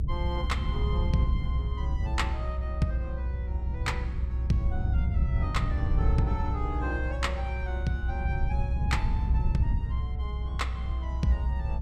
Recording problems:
rumble; below 88 Hz, strongest tone 62 Hz, SNR -4 dB

